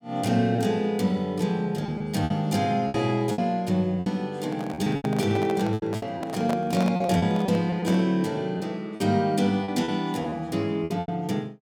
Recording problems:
lost packets; 9% of the sound replaced, filled with repeated pitch periods
handling noise; from 4.5 to 8 s; peak -2 dB vs average level

